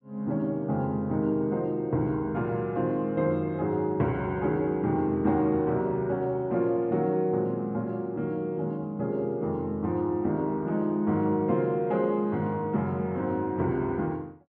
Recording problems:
none

